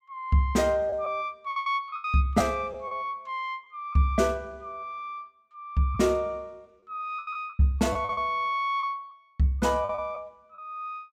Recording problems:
packet loss; 7% of the sound replaced, filled with the last packet

